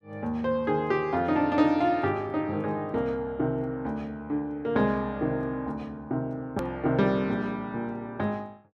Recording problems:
hard cut with a click; at 6.5 s

